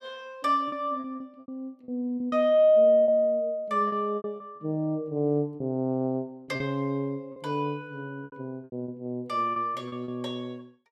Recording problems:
lost packets; 10% of the sound replaced, filled with repeated pitch periods

